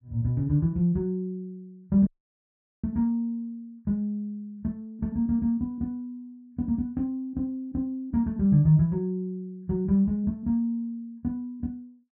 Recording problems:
dropout; at 2 s for 1 s

